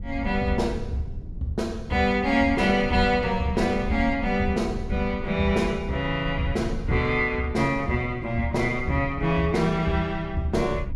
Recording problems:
rumble; below 98 Hz, SNR 12 dB

